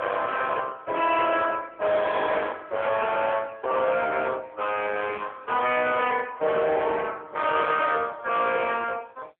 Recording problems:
telephone audio; 300 Hz to 3.5 kHz, AMR-NB
distortion; hard clipping, uneven, signal-to-distortion ratio 10 dB

